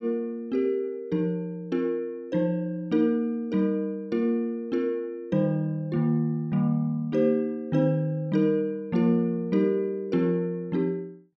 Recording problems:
none

